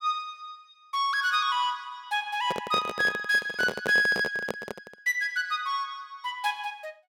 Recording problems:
microphone handling noise; from 2.5 to 5 s; peak 0 dB vs average level

